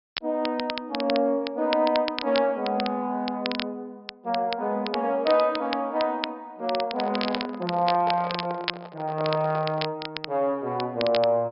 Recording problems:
low-pass filter; nothing above 5.5 kHz
crackle; vinyl, SNR 9 dB
handling noise; from 7 to 10 s; peak -4 dB vs average level

